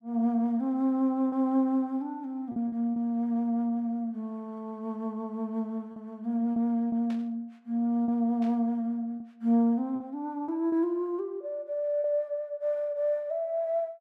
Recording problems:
packet loss; 4% of the sound replaced, filled with repeated pitch periods
static burst; at 7 s and at 8.5 s; peak -14 dB vs average level

